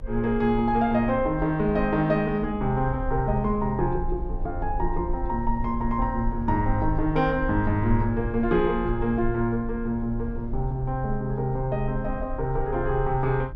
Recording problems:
rumble; below 52 Hz, SNR 9 dB

